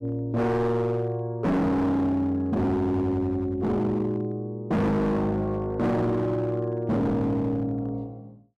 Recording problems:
distorted audio; hard clipping, signal-to-distortion ratio 7 dB

